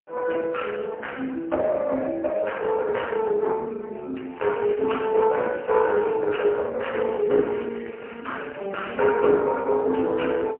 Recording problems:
telephone audio; 220 Hz to 3 kHz, AMR-NB, then MP3
crackle; from 4.5 to 6 s and from 7 to 9 s; loose cable, SNR 21 dB

